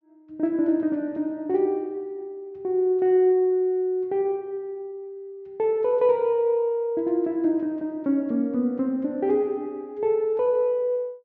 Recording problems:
low-pass filter; nothing above 7.2 kHz

